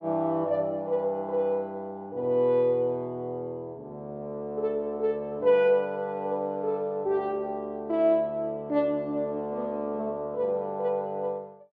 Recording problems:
none

